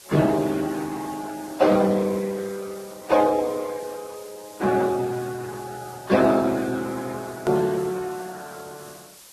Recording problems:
lossy compression; Speex, then Vorbis, log-spectral distance 4 dB, nothing above 13.1 kHz
background hiss; slope 0 dB per octave, SNR 21 dB
hard cut with a click; at 7.5 s

